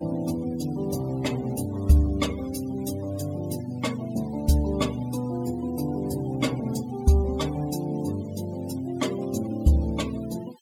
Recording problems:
denoising artefacts; signal-to-artefact ratio 19 dB

